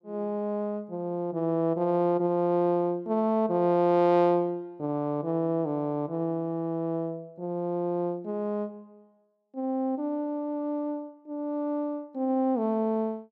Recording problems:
none

